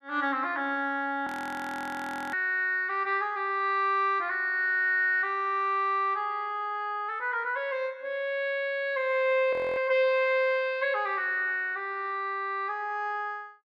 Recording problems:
frozen audio; at 1.5 s for 1 s and at 9.5 s

